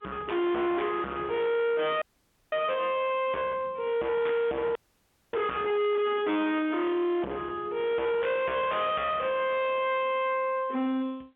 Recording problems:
phone line; 170 Hz to 3.4 kHz, G.711
distortion; hard clipping, uneven, signal-to-distortion ratio 7 dB
frozen audio; at 2 s for 0.5 s and at 5 s for 0.5 s

